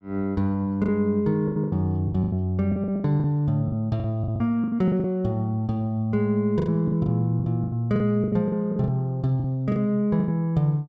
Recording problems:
packet loss; 14% of the sound replaced, filled with the last packet

